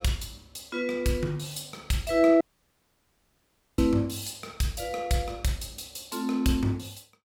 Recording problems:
dropout; at 2.5 s for 1.5 s

